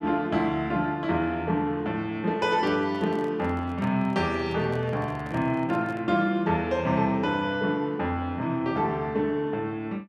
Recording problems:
handling noise; from 2.5 to 6 s; peak -11 dB vs average level

